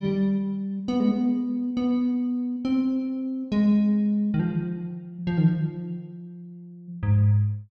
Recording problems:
none

